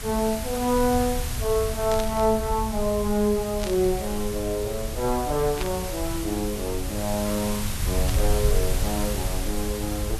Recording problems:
hiss; slope -1 dB per octave, SNR 7 dB
rumble; below 78 Hz, SNR 6 dB
static burst; 4 times, first at 2 s; peak -3 dB vs average level

